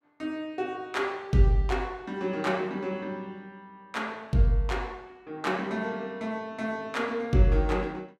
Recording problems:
none

